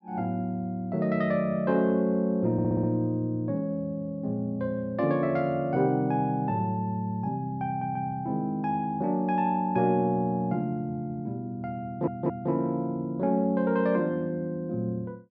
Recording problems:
audio stuttering; at 2.5 s, at 7.5 s and at 12 s

